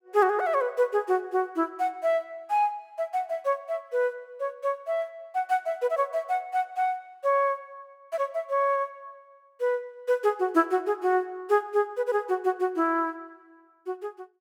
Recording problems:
none

